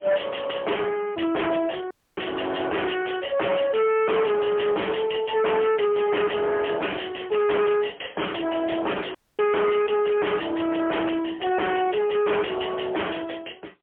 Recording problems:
telephone audio; 280 Hz to 2.8 kHz, AMR-NB, then MP3
distorted audio; hard clipping, signal-to-distortion ratio 6 dB
dropout; at 2 s and at 9 s

